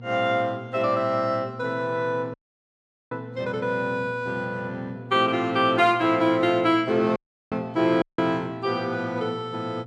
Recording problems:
electrical hum; 60 Hz, harmonics up to 720 Hz, SNR 17 dB
audio cutting out; at 2.5 s for 1 s, at 7 s and at 8 s

